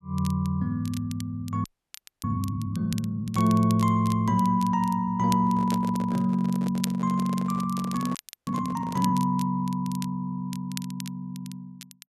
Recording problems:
crackle; vinyl, SNR 17 dB
frozen audio; at 1.5 s for 0.5 s and at 8 s
microphone handling noise; from 5.5 to 9 s; peak -6 dB vs average level

